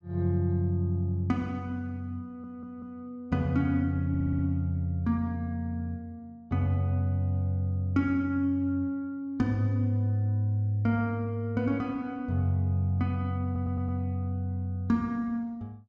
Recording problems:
stutter; at 2.5 s, at 4 s and at 13 s

